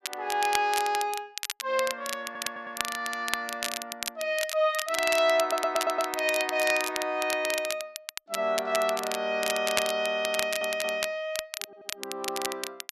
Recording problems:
crackling; vinyl, SNR 6 dB
audio stuttering; 4 times, first at 2.5 s

